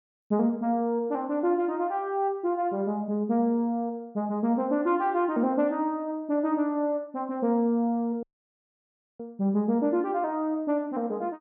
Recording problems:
dropout; at 8 s for 1 s

